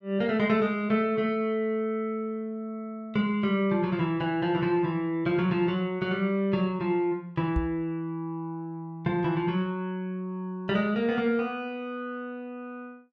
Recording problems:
knock on the microphone; at 7.5 s; peak +3 dB vs average level

